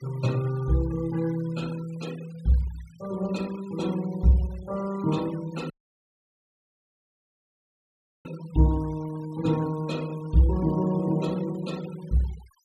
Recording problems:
noise reduction artefacts; signal-to-artefact ratio 21 dB
dropout; at 5.5 s for 2.5 s

